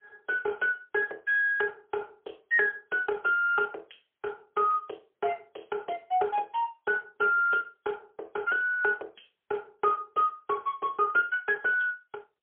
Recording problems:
phone line; 340 Hz to 3.3 kHz, AMR-NB, then MP3

